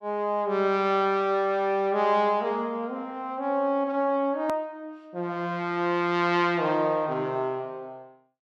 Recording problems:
hard cut with a click; at 4.5 s

